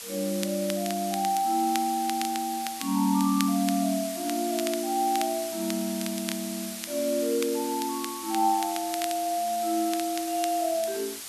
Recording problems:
hiss; slope +2 dB per octave, SNR 8 dB
crackling; vinyl, SNR 12 dB

